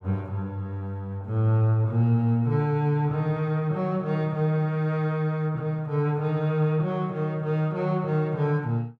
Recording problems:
none

